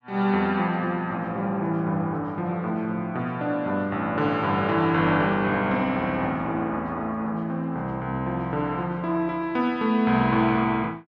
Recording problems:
none

